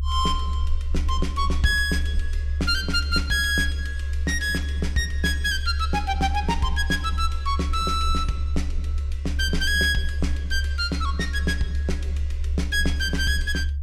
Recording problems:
rumble; below 72 Hz, strongest tone 70 Hz, SNR 2 dB

